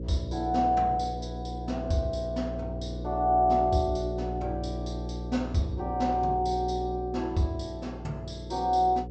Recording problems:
low-pass filter; nothing above 8 kHz
hum; 60 Hz, harmonics up to 540 Hz, SNR 8 dB

